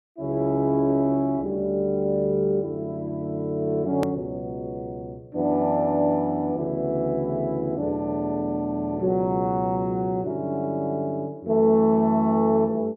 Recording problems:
click at an edit; at 4 s

